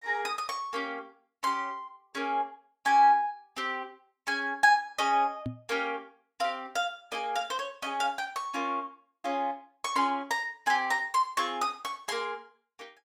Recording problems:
microphone thump; at 5.5 s; peak -2 dB vs average level

